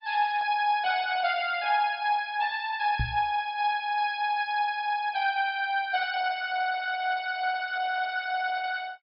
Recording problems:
treble cut off; nothing above 4.5 kHz
lossy compression; Opus, log-spectral distance 4 dB
microphone bump; at 3 s; peak +2 dB vs average level

